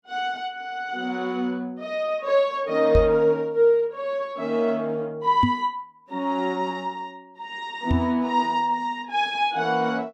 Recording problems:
microphone bump; at 3 s, at 5.5 s and at 8 s; peak +5 dB vs average level

